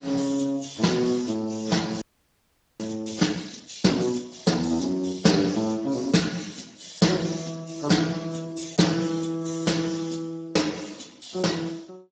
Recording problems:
lossy compression; AAC, then Speex, log-spectral distance 8 dB, nothing above 7.3 kHz
frozen audio; at 2 s for 1 s

